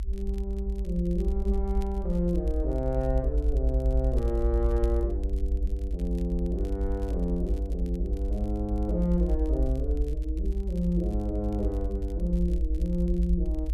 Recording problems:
low-frequency rumble; below 60 Hz, strongest tone 58 Hz, SNR -2 dB
crackling; vinyl, SNR 27 dB

